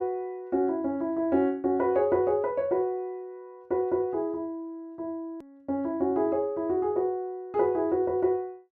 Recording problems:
hard cut with a click; at 5.5 s

